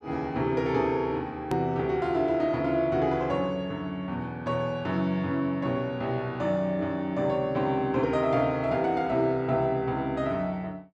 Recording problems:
edit click; at 1.5 s

